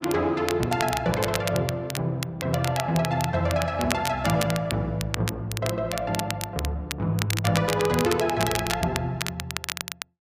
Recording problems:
crackling; vinyl, SNR 7 dB

